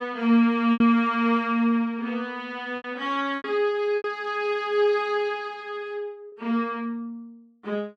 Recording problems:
lost packets; 5% of the sound replaced, filled with repeated pitch periods

